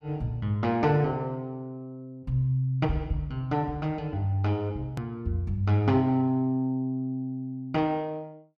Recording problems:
edit click; at 5 s

